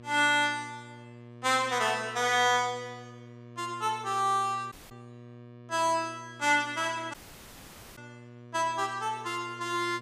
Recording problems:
hum; 60 Hz, harmonics up to 1.2 kHz, SNR 20 dB
audio cutting out; at 4.5 s and at 7 s for 1 s

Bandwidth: 15 kHz